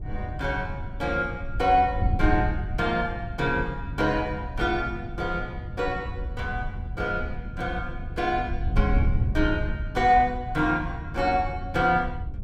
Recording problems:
wind noise; below 100 Hz, SNR 6 dB

